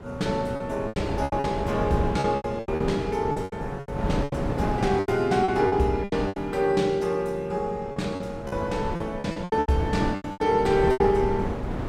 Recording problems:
wind on the microphone; below 470 Hz, SNR 6 dB
packet loss; 15% of the sound replaced, filled with repeated pitch periods

